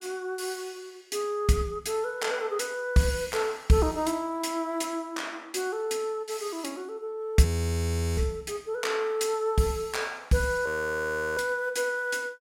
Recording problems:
frozen audio; at 7.5 s for 0.5 s and at 11 s for 0.5 s

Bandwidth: 16 kHz